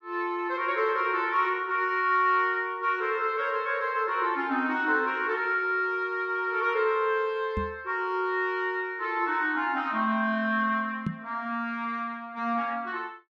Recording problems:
microphone bump; at 7.5 s and at 11 s; peak 0 dB vs average level

